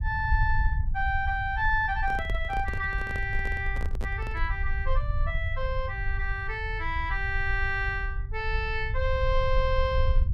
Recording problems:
rumble; below 68 Hz, SNR 2 dB
handling noise; from 2 to 4.5 s; peak -5 dB vs average level

